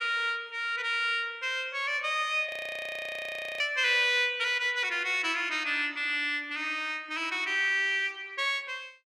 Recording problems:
frozen audio; at 2.5 s for 1 s

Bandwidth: 13.5 kHz